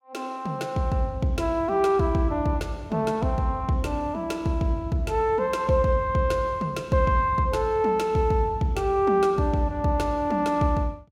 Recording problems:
none

